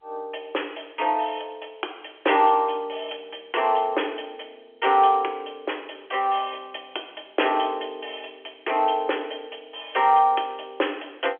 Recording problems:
telephone audio; 280 Hz to 3.4 kHz, G.711

